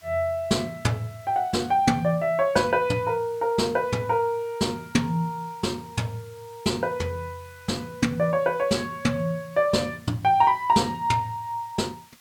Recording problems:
hiss; slope +1 dB per octave, SNR 27 dB

